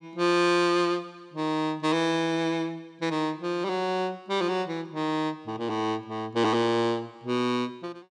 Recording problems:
none

